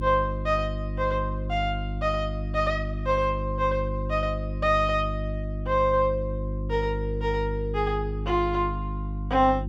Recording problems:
hum; 50 Hz, harmonics up to 350 Hz, SNR 5 dB

